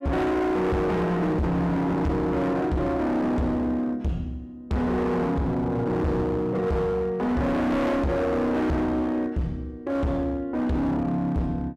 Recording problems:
distortion; hard clipping, signal-to-distortion ratio 6 dB

